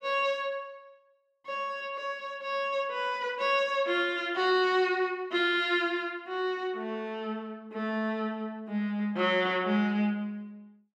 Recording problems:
none

